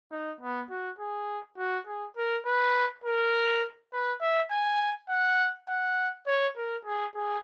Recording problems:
lossy compression; Opus, log-spectral distance 2 dB

